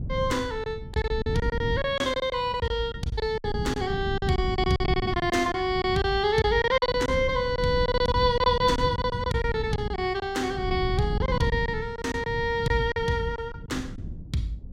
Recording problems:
wind noise; below 170 Hz, SNR 8 dB
lost packets; 12% of the sound replaced, filled with silence

